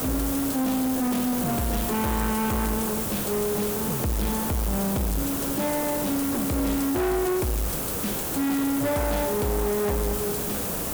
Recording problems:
distorted audio; hard clipping, signal-to-distortion ratio 7 dB
hiss; SNR 2 dB

